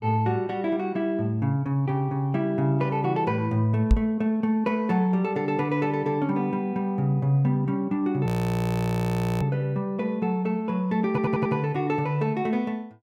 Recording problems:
knock on the microphone; at 4 s; peak +8 dB vs average level
audio freezing; at 8.5 s for 1 s
stutter; at 11 s

